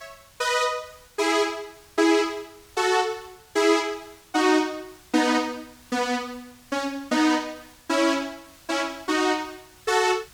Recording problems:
hiss; slope 0 dB per octave, SNR 27 dB

